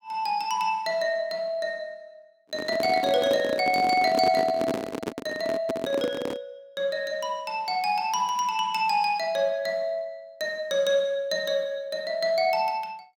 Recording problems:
handling noise; from 2.5 to 6.5 s; peak 0 dB vs average level

